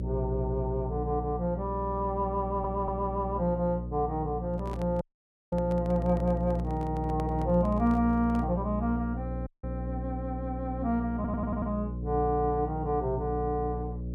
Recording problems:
hum; 60 Hz, harmonics up to 600 Hz, SNR 5 dB
audio stuttering; at 2.5 s and at 11 s
microphone handling noise; from 4.5 to 8.5 s; peak -7 dB vs average level
audio cutting out; at 5 s for 0.5 s and at 9.5 s

